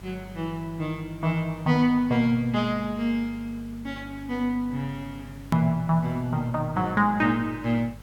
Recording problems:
mains hum; 50 Hz, harmonics up to 450 Hz, SNR 19 dB
hiss; slope -3 dB per octave, SNR 27 dB
click at an edit; at 5.5 s

